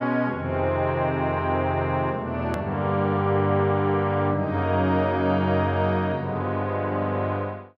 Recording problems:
click at an edit; at 2.5 s

